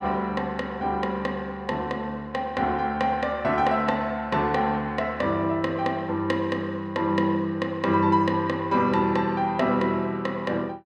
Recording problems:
none

